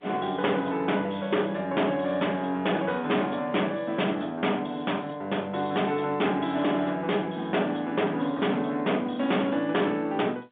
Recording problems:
telephone audio; 190 Hz to 3.6 kHz, G.711
distortion; hard clipping, signal-to-distortion ratio 7 dB

